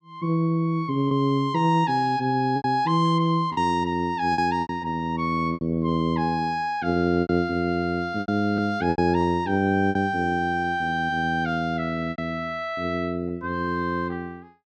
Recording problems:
packet loss; 6% of the sound replaced, filled with repeated pitch periods

